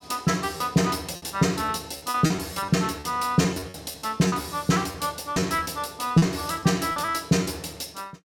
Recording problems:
lost packets; 10% of the sound replaced, filled with repeated pitch periods

